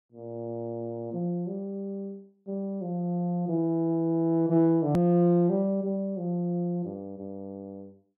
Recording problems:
hard cut with a click; at 5 s

